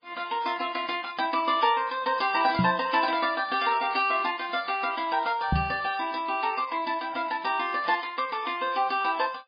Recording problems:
codec artefacts; MP3, log-spectral distance 5 dB, nothing above 4.8 kHz
knock on the microphone; at 2.5 s and at 5.5 s; peak +4 dB vs average level

